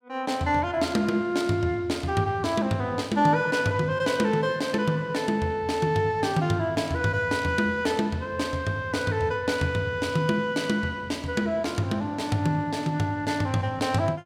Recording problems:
none

